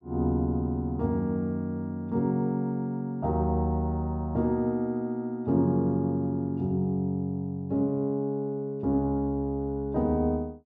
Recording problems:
none

